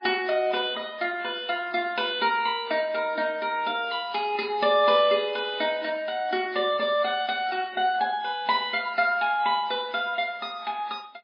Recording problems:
codec artefacts; MP3, log-spectral distance 4 dB

